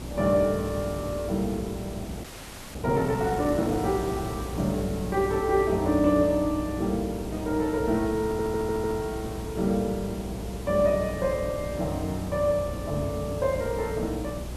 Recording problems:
hum; 60 Hz, harmonics up to 480 Hz, SNR 14 dB
background hiss; SNR 12 dB
wind on the microphone; below 350 Hz, SNR 18 dB
audio freezing; at 2 s for 0.5 s
stutter; at 8.5 s

